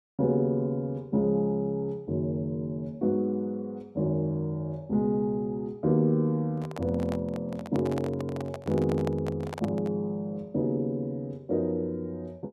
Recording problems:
microphone handling noise; from 6.5 to 10 s; peak -4 dB vs average level

